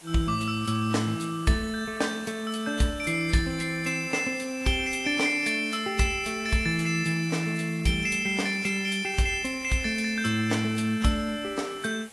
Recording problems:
lossy compression; AAC, log-spectral distance 6 dB
hiss; slope -2 dB per octave, SNR 21 dB

